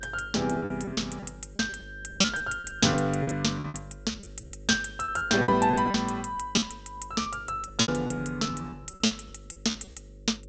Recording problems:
treble missing; nothing above 8 kHz
electrical hum; 50 Hz, harmonics up to 550 Hz, SNR 20 dB
lost packets; 14% of the sound replaced, filled with repeated pitch periods

